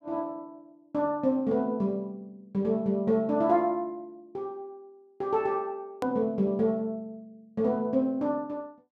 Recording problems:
hard cut with a click; at 6 s

